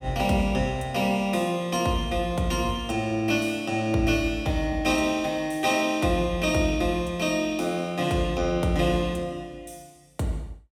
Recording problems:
none

